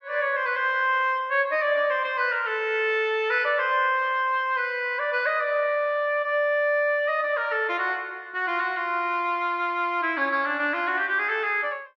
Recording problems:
none

